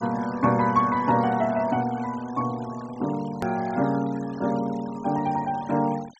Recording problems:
treble cut off; nothing above 8 kHz
denoising artefacts; signal-to-artefact ratio 20 dB
edit click; at 3.5 s

